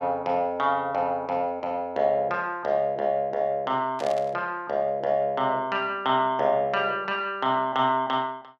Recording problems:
static burst; at 4 s; peak -10 dB vs average level

